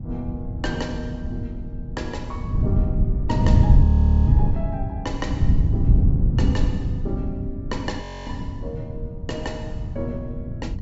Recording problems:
treble missing; nothing above 8 kHz
wind on the microphone; below 120 Hz, SNR -9 dB
audio freezing; at 4 s and at 8 s

